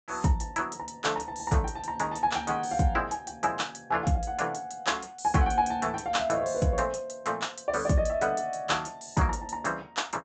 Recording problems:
treble missing; nothing above 8 kHz

